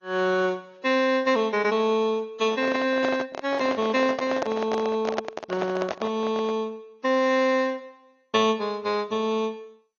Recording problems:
lossy codec; MP2, then AAC, log-spectral distance 2 dB, nothing above 6.5 kHz
microphone handling noise; from 2.5 to 6.5 s; peak +1 dB vs average level

